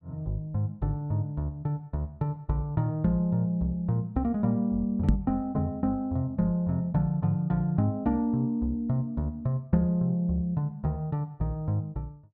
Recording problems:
microphone thump; at 5 s; peak +8 dB vs average level

